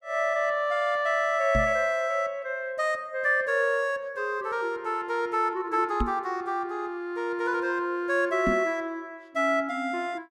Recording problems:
microphone bump; at 1.5 s, at 6 s and at 8.5 s; peak +2 dB vs average level

